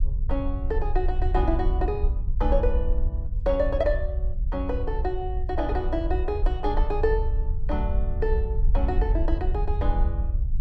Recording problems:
low-frequency rumble; below 60 Hz, SNR -2 dB

